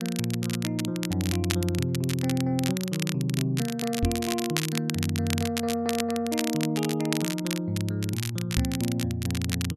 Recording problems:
crackle; vinyl, SNR 6 dB
microphone bump; at 4 s and at 8.5 s; peak +6 dB vs average level

